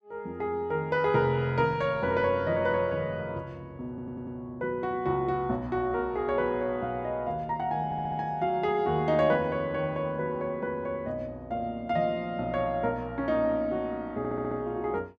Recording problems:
stutter; at 4 s, at 8 s and at 14 s

